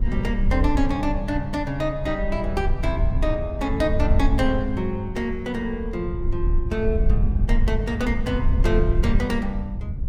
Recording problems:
rumble; below 72 Hz, SNR 0 dB

